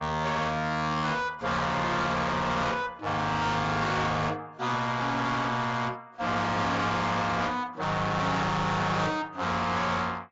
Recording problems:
codec artefacts; AAC, log-spectral distance 4 dB, nothing above 7.3 kHz
distortion; soft clipping, signal-to-distortion ratio 6 dB

